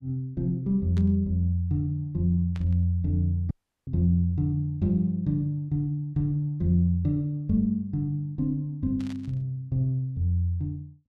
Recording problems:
static burst; at 1 s, at 2.5 s and at 9 s; peak -15 dB vs average level
dropout; at 3.5 s

